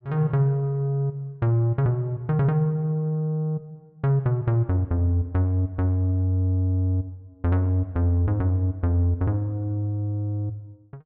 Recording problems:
none

